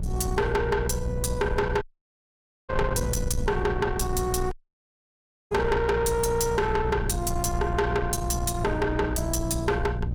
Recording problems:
distorted audio; soft clipping, signal-to-distortion ratio 8 dB
hum; 60 Hz, harmonics up to 420 Hz, SNR 6 dB
wind on the microphone; below 160 Hz, SNR 7 dB
dropout; at 2 s for 1 s and at 4.5 s for 1 s

